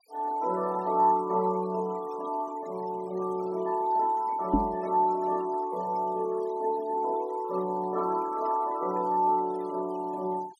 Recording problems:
noise reduction artefacts; signal-to-artefact ratio 22 dB
microphone bump; at 4.5 s; peak +8 dB vs average level

